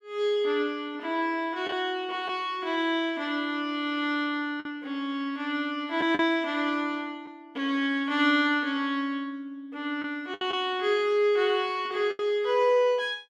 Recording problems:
lost packets; 3% of the sound replaced, filled with the last packet

